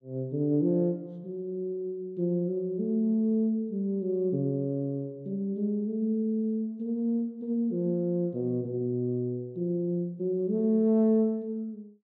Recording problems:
none

